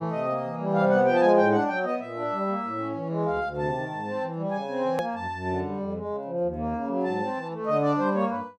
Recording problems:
hard cut with a click; at 5 s

